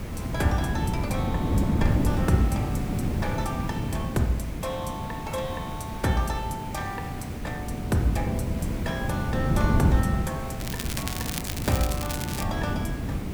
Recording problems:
hiss; SNR 11 dB
wind noise; below 240 Hz, SNR -2 dB
crackle; from 11 to 12 s; loose cable, SNR 3 dB

